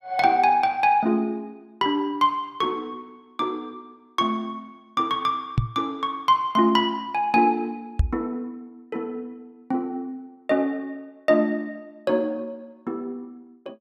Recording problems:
knock on the microphone; at 5.5 s and at 8 s; peak +7 dB vs average level

